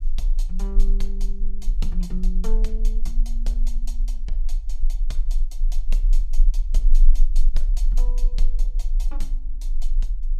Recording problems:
rumble; below 32 Hz, strongest tone 24 Hz, SNR -14 dB

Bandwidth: 15.5 kHz